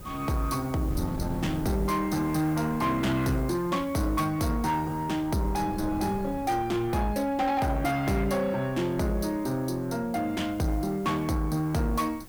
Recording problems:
distorted audio; soft clipping, signal-to-distortion ratio 12 dB
background hiss; SNR 23 dB
wind noise; below 220 Hz, SNR 15 dB

